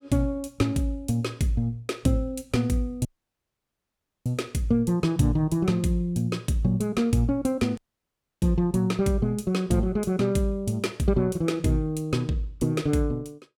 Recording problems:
dropout; at 3 s for 1 s and at 8 s for 0.5 s

